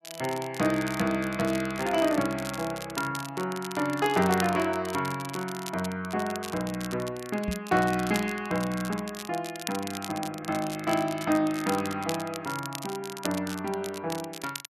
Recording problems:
crackling; vinyl, SNR 11 dB
microphone thump; at 7.5 s; peak +1 dB vs average level

